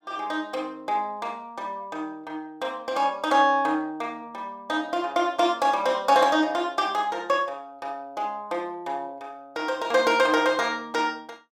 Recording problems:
none

